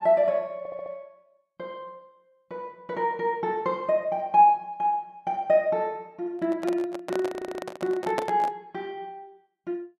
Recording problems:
stutter; at 0.5 s and at 7.5 s
handling noise; from 6.5 to 8.5 s; peak +1 dB vs average level

